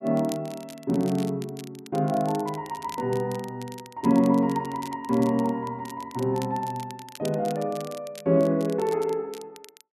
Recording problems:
crackle; vinyl, SNR 19 dB

